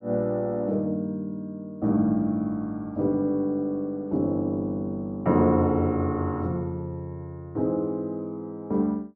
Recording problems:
none

